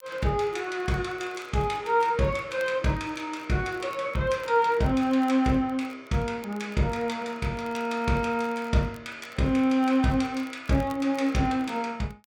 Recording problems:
crackle; vinyl, SNR 28 dB

